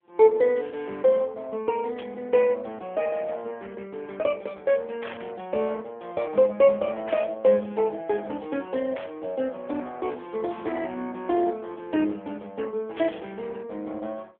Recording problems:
phone line; 240 Hz to 3.3 kHz, AMR-NB
static burst; 5 times, first at 2 s; peak -7 dB vs average level

